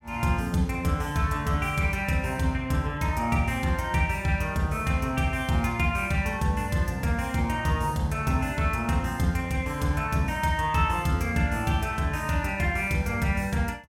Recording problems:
none

